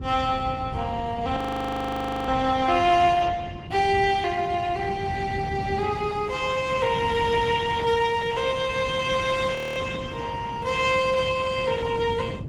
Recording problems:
codec artefacts; Opus, log-spectral distance 4 dB
low-frequency rumble; below 200 Hz, SNR 11 dB
frozen audio; at 1.5 s for 1 s and at 9.5 s

